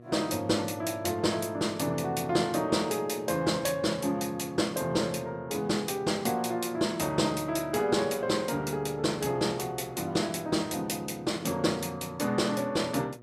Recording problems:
mains hum; 60 Hz, harmonics up to 1.3 kHz, SNR 22 dB

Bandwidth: 15 kHz